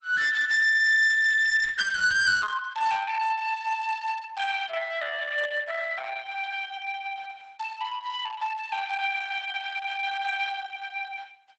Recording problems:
lossy codec; Opus, log-spectral distance 4 dB, nothing above 8 kHz
distortion; hard clipping, uneven, signal-to-distortion ratio 11 dB

